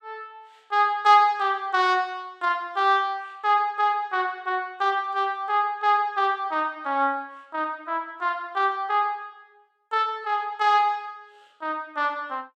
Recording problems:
none

